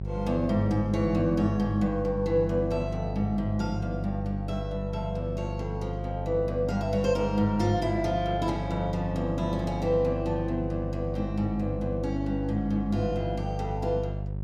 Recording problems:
hum; 50 Hz, harmonics up to 550 Hz, SNR 5 dB

